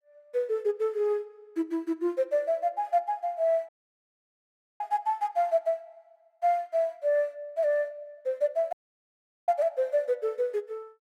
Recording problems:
dropout; at 3.5 s for 1 s and at 8.5 s for 1 s

